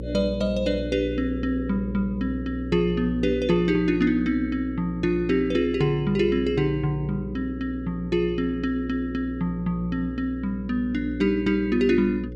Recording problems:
hum; 60 Hz, harmonics up to 540 Hz, SNR 10 dB

